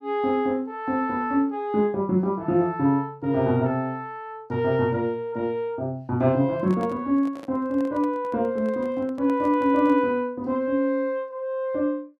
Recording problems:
handling noise; from 6.5 to 10 s; peak -10 dB vs average level

